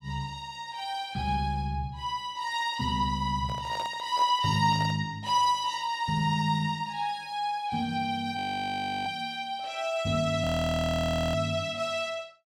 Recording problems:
handling noise; from 3.5 to 5 s; peak -8 dB vs average level
audio freezing; at 8.5 s for 0.5 s and at 10 s for 1 s

